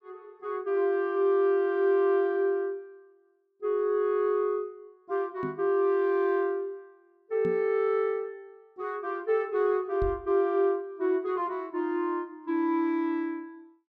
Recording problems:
microphone thump; at 5.5 s, at 7.5 s and at 10 s; peak -4 dB vs average level

